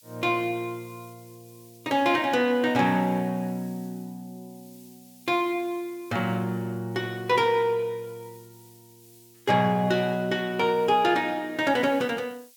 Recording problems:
hiss; slope +7 dB per octave, SNR 27 dB

